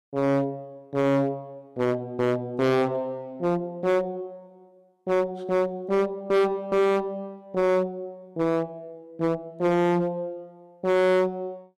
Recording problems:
distortion; hard clipping, uneven, signal-to-distortion ratio 5 dB

